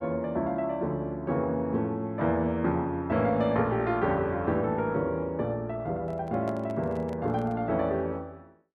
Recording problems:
microphone handling noise; from 6 to 7.5 s; peak -10 dB vs average level

